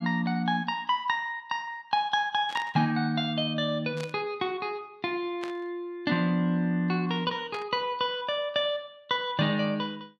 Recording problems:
burst of static; 4 times, first at 2.5 s; peak -7 dB vs average level

